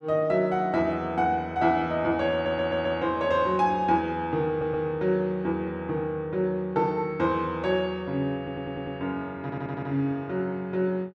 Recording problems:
audio stuttering; 4 times, first at 2.5 s

